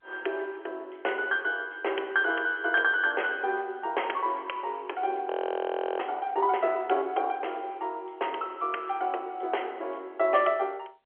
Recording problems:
telephone audio; 320 Hz to 3.3 kHz, G.711
frozen audio; at 5.5 s for 0.5 s

